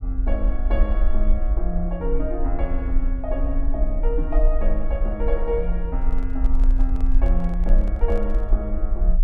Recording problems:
low-frequency rumble; below 44 Hz, SNR -5 dB
handling noise; from 6 to 8.5 s; peak -8 dB vs average level

